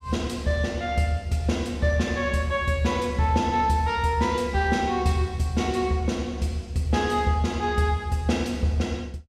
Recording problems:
none

